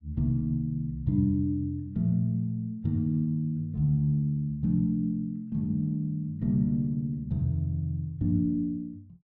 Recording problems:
none

